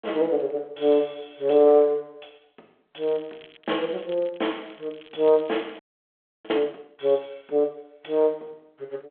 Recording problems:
telephone audio; 260 Hz to 3.4 kHz, G.726
crackle; from 3 to 6.5 s; loose cable, SNR 27 dB
audio freezing; at 6 s for 0.5 s

